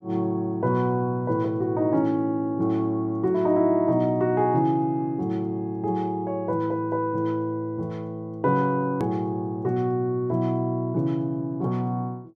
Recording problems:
hard cut with a click; at 9 s

